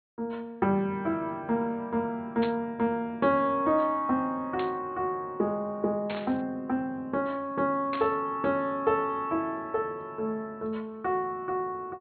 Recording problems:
treble missing; nothing above 4.3 kHz
burst of static; 4 times, first at 2.5 s; peak -4 dB vs average level

